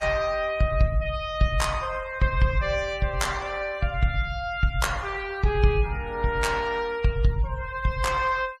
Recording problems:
noise reduction artefacts; signal-to-artefact ratio 21 dB

